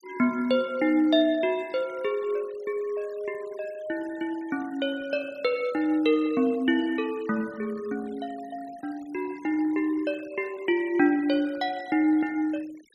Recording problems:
noise reduction artefacts; signal-to-artefact ratio 23 dB

